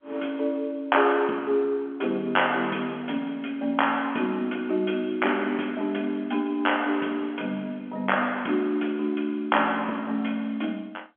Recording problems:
telephone audio; 190 Hz to 3.4 kHz, G.711

